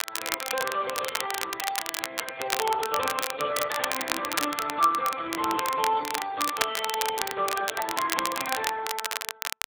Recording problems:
codec artefacts; AAC, then Speex, log-spectral distance 6 dB
crackle; vinyl, SNR 2 dB

